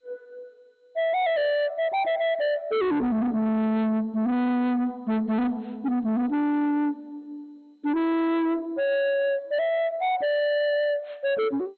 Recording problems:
lossy compression; MP2, log-spectral distance 2 dB, nothing above 3.7 kHz
distortion; soft clipping, signal-to-distortion ratio 7 dB

